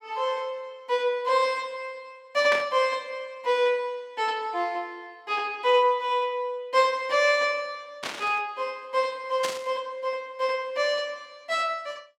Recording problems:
burst of static; at 2.5 s, at 8 s and at 9.5 s; peak 0 dB vs average level

